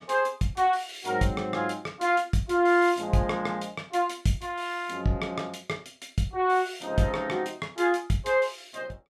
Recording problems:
none

